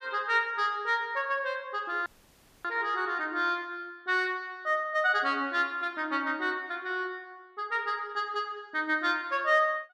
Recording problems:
dropout; at 2 s for 0.5 s

